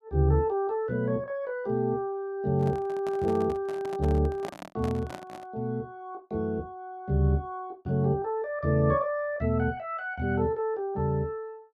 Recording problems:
microphone handling noise; from 2.5 to 5.5 s; peak -6 dB vs average level

